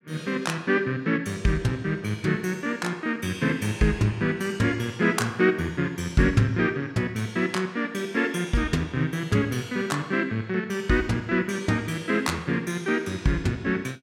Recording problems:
none

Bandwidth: 16 kHz